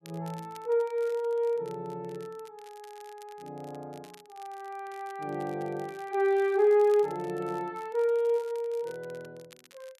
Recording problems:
crackling; vinyl, SNR 27 dB

